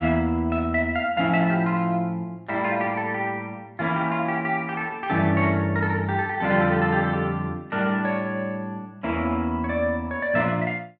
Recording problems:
none

